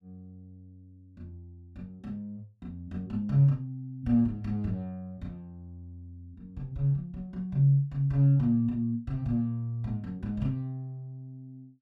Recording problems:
none

